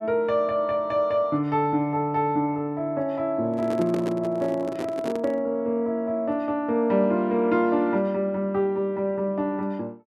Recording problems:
microphone handling noise; from 3.5 to 5.5 s; peak -2 dB vs average level

